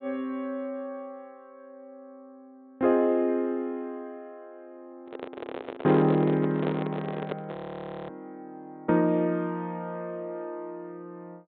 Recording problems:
treble cut off; nothing above 4 kHz
handling noise; from 5 to 7.5 s; peak 0 dB vs average level
audio freezing; at 7.5 s for 0.5 s

